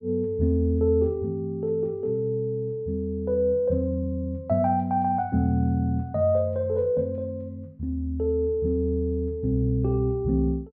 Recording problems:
none

